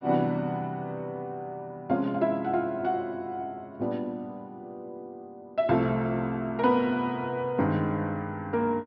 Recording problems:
low-pass filter; nothing above 5.5 kHz

